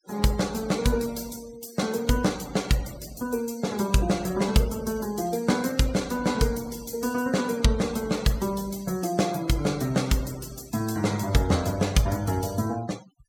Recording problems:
noise reduction artefacts; signal-to-artefact ratio 18 dB

